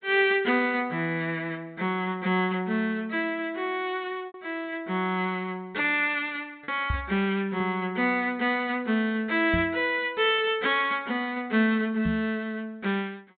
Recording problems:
treble cut off; nothing above 4 kHz
packet loss; 1.4% of the sound replaced, filled with repeated pitch periods
microphone thump; at 7 s, at 9.5 s and at 12 s; peak +1 dB vs average level

